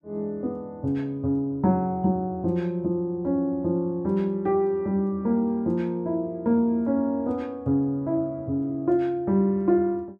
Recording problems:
none

